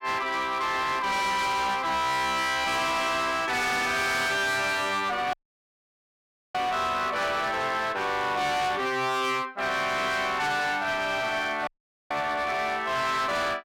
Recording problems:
distortion; hard clipping, uneven, signal-to-distortion ratio 7 dB
dropout; at 5.5 s for 1 s and at 12 s

